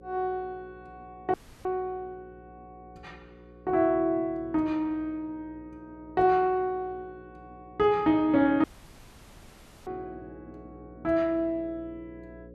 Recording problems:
electrical hum; 60 Hz, harmonics up to 540 Hz, SNR 23 dB
dropout; at 1.5 s and at 8.5 s for 1 s

